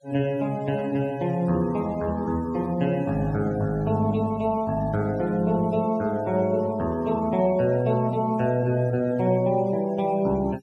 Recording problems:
noise reduction artefacts; signal-to-artefact ratio 24 dB

